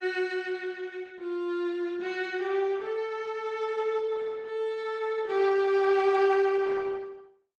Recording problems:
codec artefacts; Opus, log-spectral distance 3 dB

